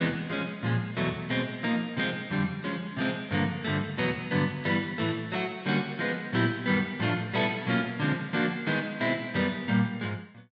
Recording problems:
none

